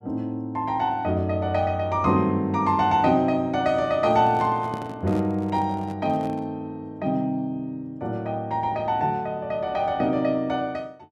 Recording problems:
microphone handling noise; from 4 to 6.5 s; peak -7 dB vs average level

